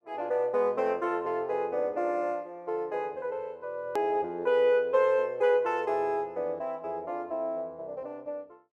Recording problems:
edit click; at 4 s

